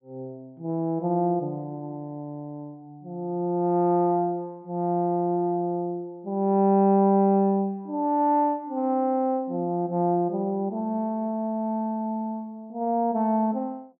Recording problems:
treble missing; nothing above 3.1 kHz

